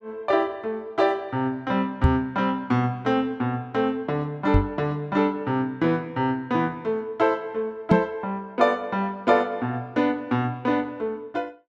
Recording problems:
microphone bump; at 2 s, at 4.5 s and at 8 s; peak +10 dB vs average level

